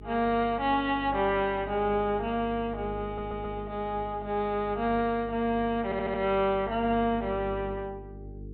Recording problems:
low-pass filter; nothing above 4 kHz
hum; 50 Hz, harmonics up to 450 Hz, SNR 14 dB
stutter; at 3 s and at 6 s

